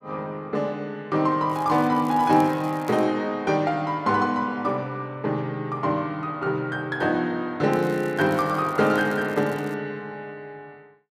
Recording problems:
crackle; from 1.5 to 3 s and from 7.5 to 9.5 s; loose cable, SNR 24 dB

